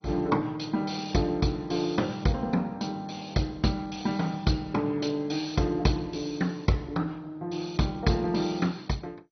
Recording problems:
lossy codec; MP2, log-spectral distance 4 dB, nothing above 6 kHz

